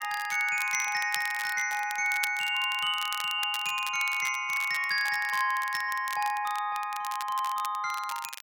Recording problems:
crackling; vinyl, SNR 13 dB

